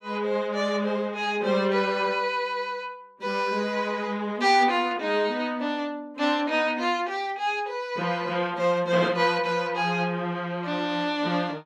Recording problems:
none

